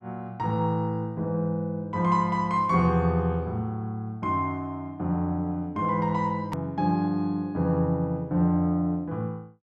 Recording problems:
hard cut with a click; at 6.5 s

